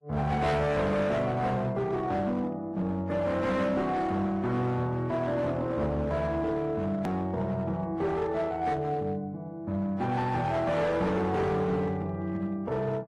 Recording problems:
codec artefacts; AAC, then AAC, log-spectral distance 2 dB, nothing above 12 kHz
distorted audio; hard clipping, signal-to-distortion ratio 10 dB
hard cut with a click; at 7 s

